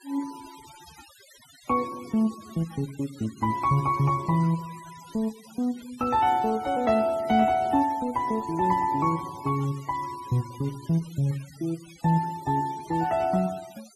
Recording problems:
denoising artefacts; signal-to-artefact ratio 21 dB

